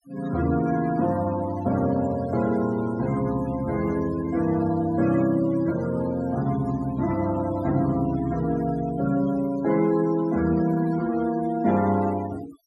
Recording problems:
denoising artefacts; signal-to-artefact ratio 17 dB

